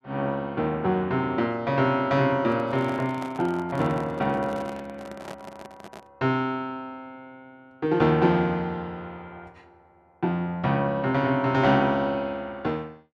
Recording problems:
handling noise; from 2.5 to 6 s; peak -8 dB vs average level

